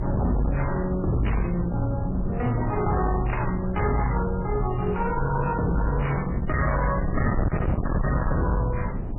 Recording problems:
codec artefacts; MP3, log-spectral distance 3 dB, nothing above 2.5 kHz
distortion; hard clipping, uneven, signal-to-distortion ratio 6 dB
wind noise; below 200 Hz, SNR 4 dB

